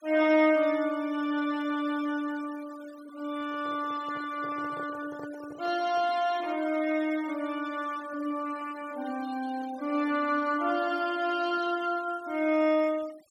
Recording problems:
noise reduction artefacts; signal-to-artefact ratio 20 dB
handling noise; from 3.5 to 6 s; peak -10 dB vs average level

